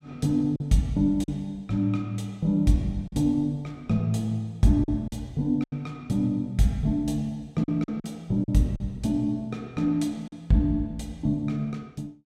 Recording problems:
lost packets; 4% of the sound replaced, filled with silence

